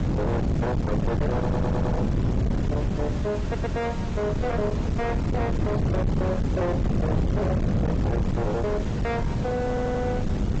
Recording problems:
treble cut off; nothing above 7.8 kHz
lossy codec; AAC, log-spectral distance 2 dB
distorted audio; soft clipping, signal-to-distortion ratio 6 dB
background hiss; slope -7 dB per octave, SNR 9 dB
wind noise; below 380 Hz, SNR -2 dB
audio stuttering; at 1.5 s, at 3.5 s and at 9.5 s

